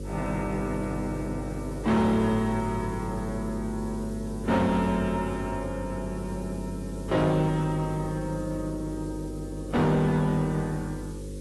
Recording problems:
lossy codec; AAC, log-spectral distance 5 dB, nothing above 11.3 kHz
distorted audio; hard clipping, signal-to-distortion ratio 11 dB
hum; 50 Hz, harmonics up to 550 Hz, SNR 8 dB
background hiss; slope 0 dB per octave, SNR 22 dB

